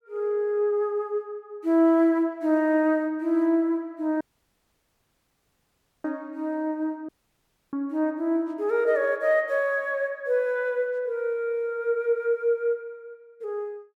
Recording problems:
dropout; at 4 s for 2 s and at 7 s for 0.5 s

